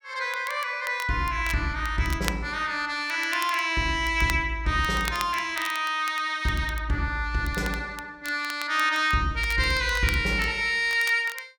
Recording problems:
crackling; vinyl, SNR 15 dB

